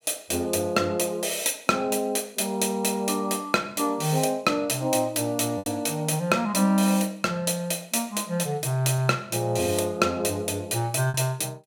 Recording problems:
packet loss; 1.4% of the sound replaced, filled with repeated pitch periods

